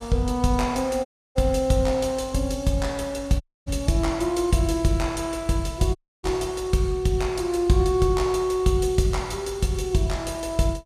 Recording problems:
dropout; at 1 s, at 3.5 s and at 6 s

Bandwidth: 14.5 kHz